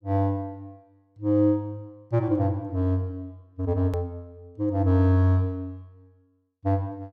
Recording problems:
click at an edit; at 4 s

